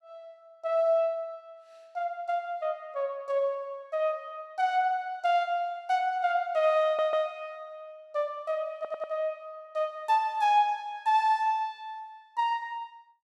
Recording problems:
audio stuttering; at 7 s and at 9 s

